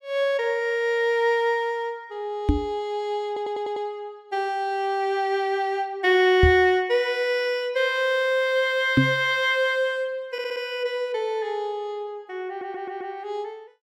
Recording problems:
microphone bump; at 2.5 s, at 6.5 s and at 9 s; peak +9 dB vs average level
stutter; at 3.5 s, at 10 s and at 12 s

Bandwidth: 17.5 kHz